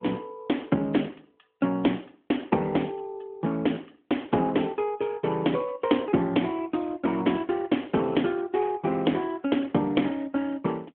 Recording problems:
telephone audio; 110 Hz to 3.4 kHz, AMR-NB

